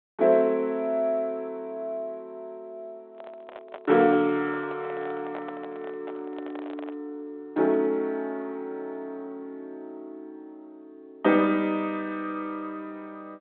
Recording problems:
telephone audio; 260 Hz to 3.9 kHz, G.726
handling noise; from 3 to 7 s; peak -8 dB vs average level

